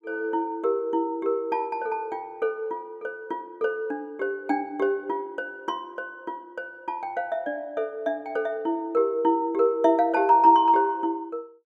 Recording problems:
none

